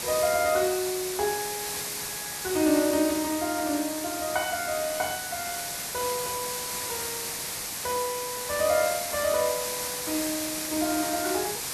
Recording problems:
hiss; slope 0 dB per octave, SNR 2 dB

